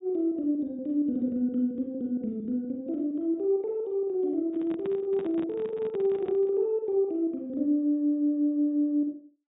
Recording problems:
treble cut off; nothing above 4 kHz
handling noise; from 4.5 to 6.5 s; peak -8 dB vs average level

